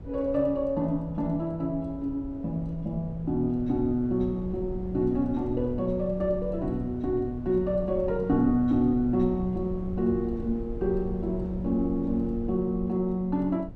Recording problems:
wind on the microphone; below 140 Hz, SNR 12 dB

